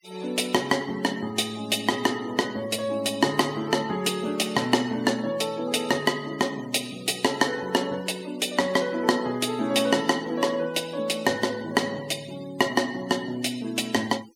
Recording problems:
denoising artefacts; signal-to-artefact ratio 20 dB

